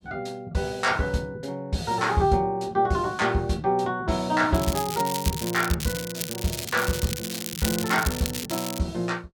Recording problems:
crackling; from 4.5 to 9 s; loose cable, SNR 6 dB

